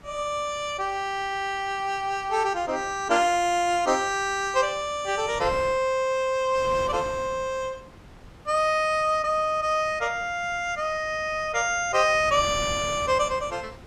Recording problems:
wind noise; below 910 Hz, SNR 19 dB

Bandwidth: 15 kHz